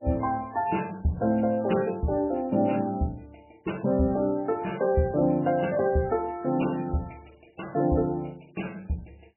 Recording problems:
lossy codec; MP3, log-spectral distance 6 dB, nothing above 2.9 kHz

